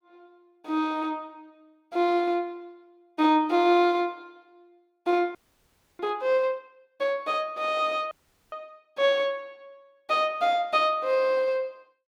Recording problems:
frozen audio; at 5.5 s for 0.5 s and at 8 s

